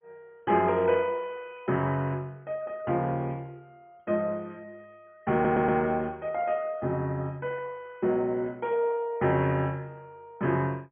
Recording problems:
treble missing; nothing above 3 kHz
lossy compression; MP2, log-spectral distance 2 dB
audio stuttering; at 5.5 s

